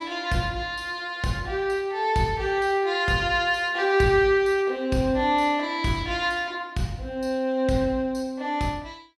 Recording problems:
none

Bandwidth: 15.5 kHz